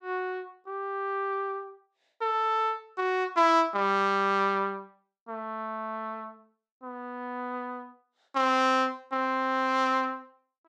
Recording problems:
none

